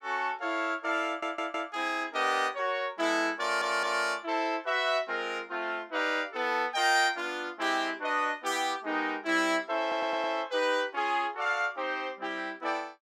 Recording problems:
audio stuttering; at 1 s, at 3.5 s and at 10 s

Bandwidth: 16.5 kHz